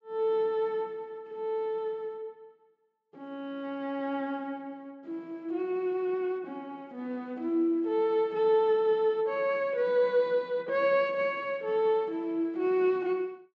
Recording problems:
treble missing; nothing above 8 kHz

